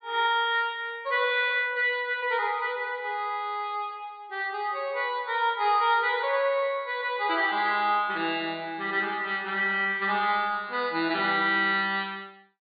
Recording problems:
treble missing; nothing above 4.6 kHz

